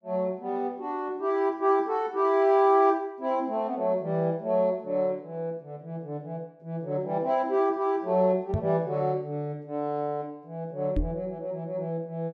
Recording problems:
knock on the microphone; at 8.5 s and at 11 s; peak +3 dB vs average level

